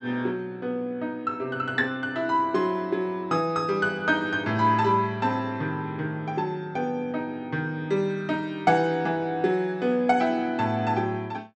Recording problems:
treble missing; nothing above 7.9 kHz

